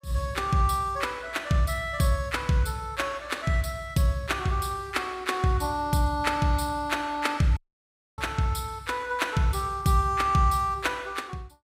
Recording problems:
audio cutting out; at 7.5 s for 0.5 s

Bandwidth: 15.5 kHz